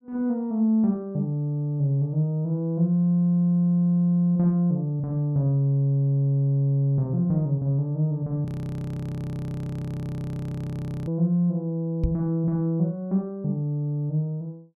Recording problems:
frozen audio; at 8.5 s for 2.5 s
microphone bump; at 12 s; peak +4 dB vs average level

